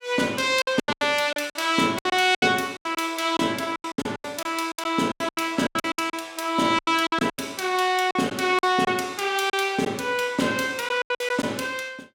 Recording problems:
lost packets; 15% of the sound replaced, filled with silence

